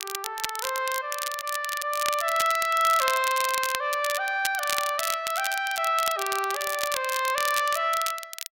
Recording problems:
crackling; vinyl, SNR 6 dB

